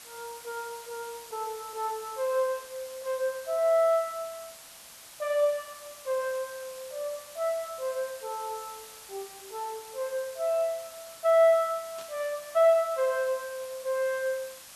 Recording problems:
hiss; slope +1 dB per octave, SNR 16 dB
static burst; at 12 s; peak -14 dB vs average level

